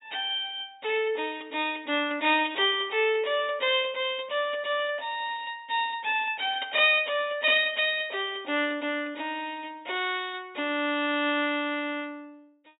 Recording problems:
low-pass filter; nothing above 4 kHz

